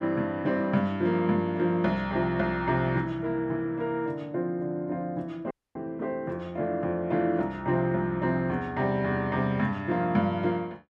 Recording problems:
audio cutting out; at 5.5 s

